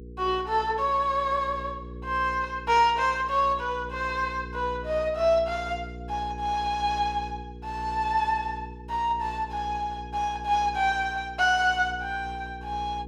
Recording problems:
hum; 60 Hz, harmonics up to 480 Hz, SNR 14 dB

